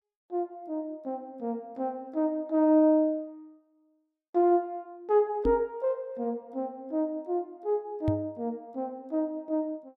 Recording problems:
microphone bump; at 5.5 s and at 8 s; peak +3 dB vs average level

